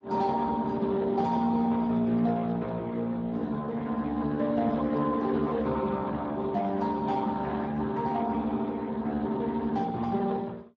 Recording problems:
codec artefacts; Speex, log-spectral distance 3 dB

